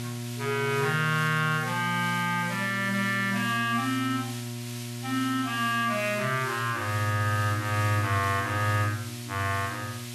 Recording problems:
hum; 60 Hz, harmonics up to 1.3 kHz, SNR 10 dB
background hiss; SNR 13 dB

